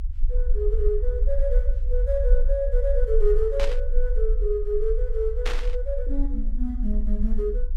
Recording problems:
low-frequency rumble; below 42 Hz, strongest tone 22 Hz, SNR -2 dB
static burst; at 3.5 s and at 5.5 s; peak +1 dB vs average level

